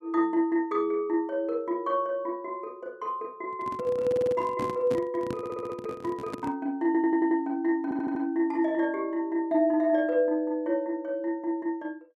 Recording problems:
microphone handling noise; from 3.5 to 6.5 s; peak -3 dB vs average level
audio stuttering; 4 times, first at 4 s

